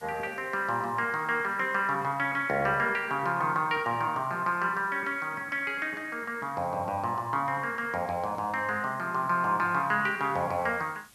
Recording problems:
hiss; slope 0 dB per octave, SNR 27 dB

